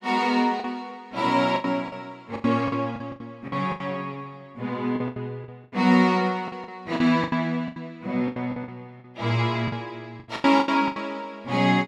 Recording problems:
lost packets; 13% of the sound replaced, filled with the last packet

